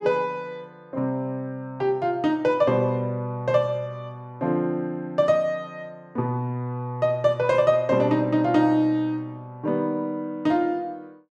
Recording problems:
none

